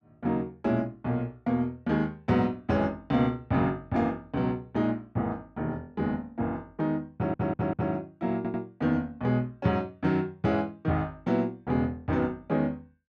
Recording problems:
stutter; at 7 s and at 8.5 s

